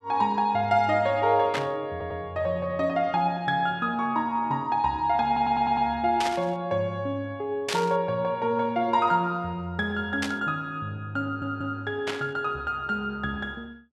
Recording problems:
static burst; 5 times, first at 1.5 s; peak +1 dB vs average level
audio stuttering; at 2 s, at 5.5 s and at 11 s

